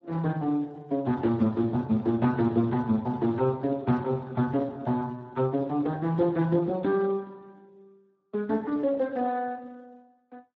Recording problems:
lossy compression; Speex, log-spectral distance 2 dB

